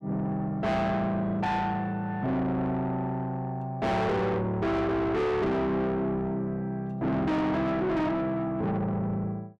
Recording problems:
distortion; soft clipping, signal-to-distortion ratio 5 dB

